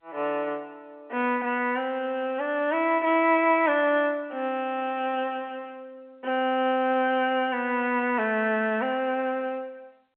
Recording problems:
phone line; 220 Hz to 3.2 kHz, G.711

